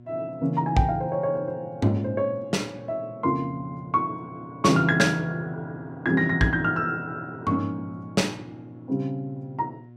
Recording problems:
hum; 60 Hz, harmonics up to 720 Hz, SNR 21 dB

